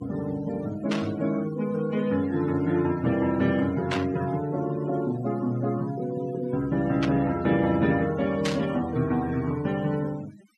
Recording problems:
noise reduction artefacts; signal-to-artefact ratio 19 dB
burst of static; 4 times, first at 1 s; peak 0 dB vs average level

